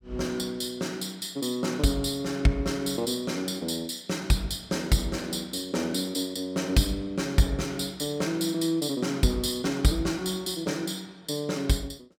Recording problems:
none

